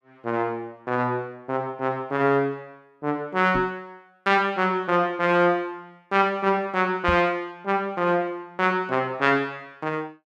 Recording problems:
microphone bump; at 3.5 s and at 7 s; peak -1 dB vs average level

